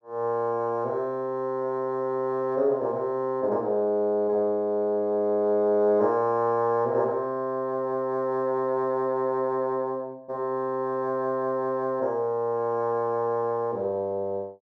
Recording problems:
none

